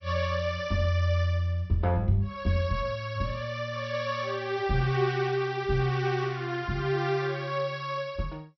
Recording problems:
codec artefacts; MP2, log-spectral distance 3 dB, nothing above 5.8 kHz

